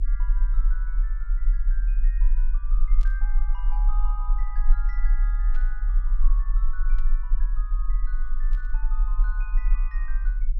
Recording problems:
low-frequency rumble; below 36 Hz, SNR -18 dB
static burst; 4 times, first at 3 s; peak -3 dB vs average level

